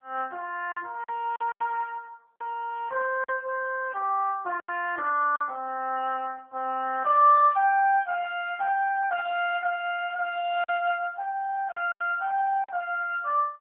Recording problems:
phone line; 280 Hz to 3.5 kHz, AMR-NB
lost packets; 4% of the sound replaced, filled with silence

